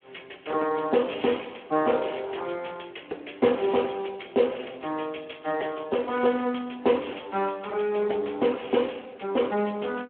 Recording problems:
phone line; 280 Hz to 3.2 kHz, Speex

